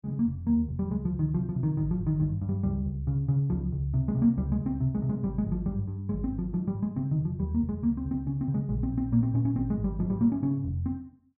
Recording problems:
none

